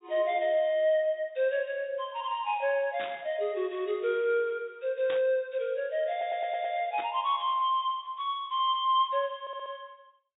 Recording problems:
low-pass filter; nothing above 4 kHz
burst of static; at 3 s, at 5 s and at 7 s; peak -7 dB vs average level
stutter; at 6 s and at 9.5 s

